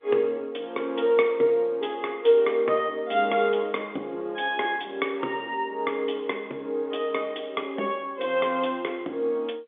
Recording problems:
telephone audio; 240 Hz to 3.5 kHz, G.711

